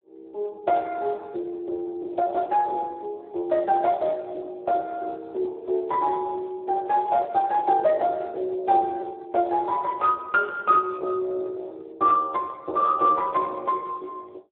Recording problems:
telephone audio; 320 Hz to 2.8 kHz, Speex

